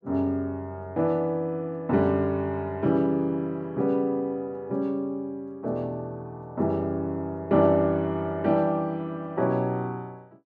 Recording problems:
none

